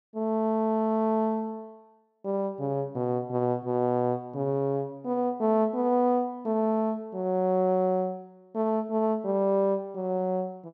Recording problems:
none

